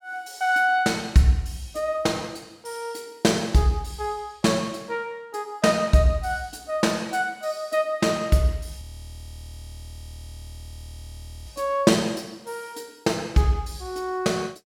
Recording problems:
audio freezing; at 9 s for 2.5 s

